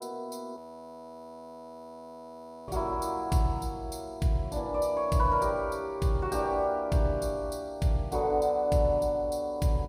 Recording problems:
frozen audio; at 0.5 s for 2 s

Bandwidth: 15.5 kHz